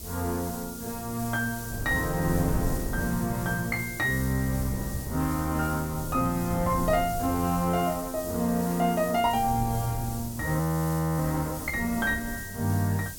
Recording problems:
hiss; SNR 11 dB
wind noise; below 200 Hz, SNR 11 dB
frozen audio; at 11 s for 0.5 s

